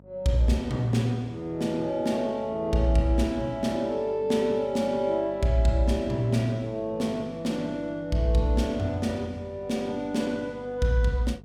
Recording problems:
hum; 50 Hz, harmonics up to 950 Hz, SNR 23 dB

